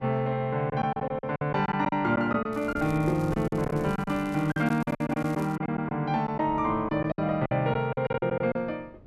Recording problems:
wind noise; below 360 Hz, SNR 18 dB
lost packets; 12% of the sound replaced, filled with silence
crackling; from 2.5 to 5.5 s; loose cable, SNR 25 dB

